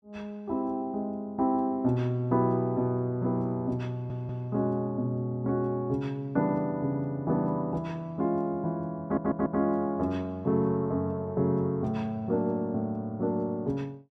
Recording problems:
audio stuttering; at 4 s and at 9 s

